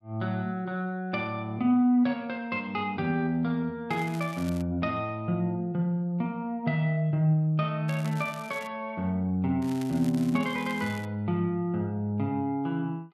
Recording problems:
crackle; at 4 s, at 8 s and from 9.5 to 11 s; loose cable, SNR 20 dB

